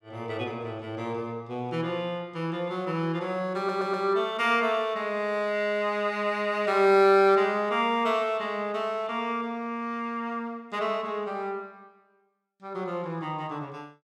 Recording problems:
stutter; at 3.5 s

